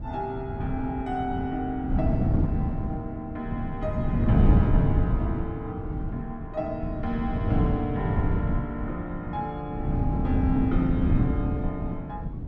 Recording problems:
wind on the microphone; below 190 Hz, SNR -5 dB

